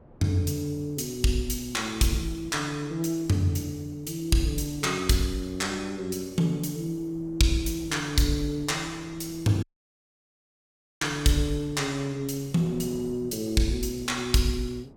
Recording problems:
wind on the microphone; below 440 Hz, SNR 23 dB
dropout; at 9.5 s for 1.5 s

